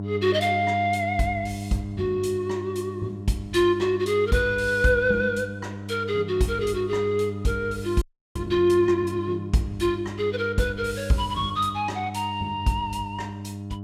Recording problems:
electrical hum; 50 Hz, harmonics up to 700 Hz, SNR 10 dB
frozen audio; at 8 s

